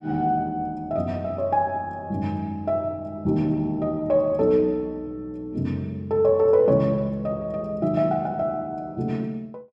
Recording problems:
none

